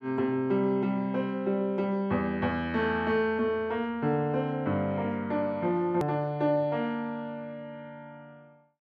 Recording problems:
edit click; at 6 s

